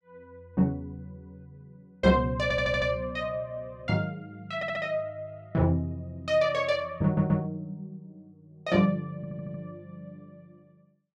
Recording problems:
audio stuttering; 4 times, first at 2.5 s

